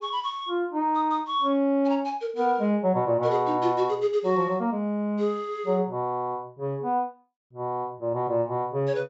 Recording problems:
low-pass filter; nothing above 8 kHz

